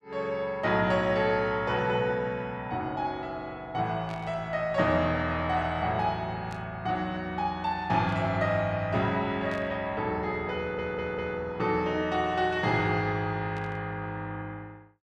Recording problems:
static burst; 5 times, first at 4 s; peak -12 dB vs average level
audio stuttering; at 11 s

